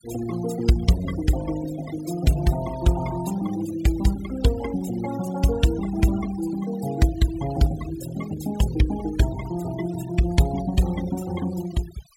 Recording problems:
denoising artefacts; signal-to-artefact ratio 14 dB

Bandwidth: 16 kHz